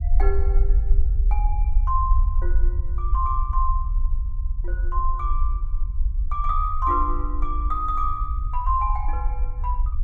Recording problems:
low-frequency rumble; below 52 Hz, SNR -2 dB

